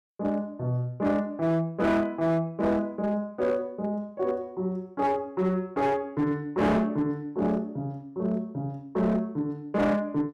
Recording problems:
distortion; hard clipping, signal-to-distortion ratio 10 dB

